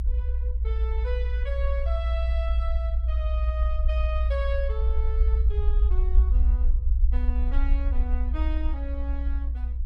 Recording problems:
low-frequency rumble; below 60 Hz, SNR -11 dB

